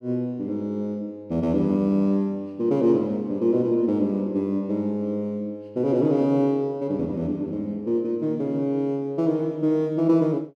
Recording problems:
none

